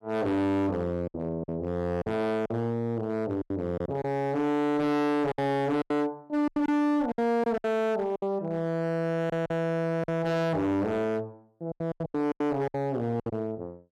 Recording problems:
distortion; hard clipping, uneven, signal-to-distortion ratio 8 dB
lost packets; 10% of the sound replaced, filled with silence

